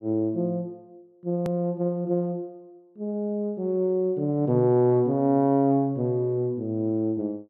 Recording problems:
hard cut with a click; at 1.5 s

